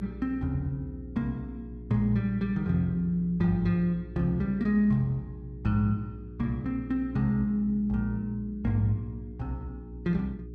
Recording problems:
hum; 60 Hz, harmonics up to 420 Hz, SNR 13 dB

